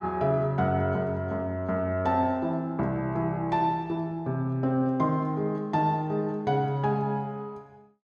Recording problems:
none

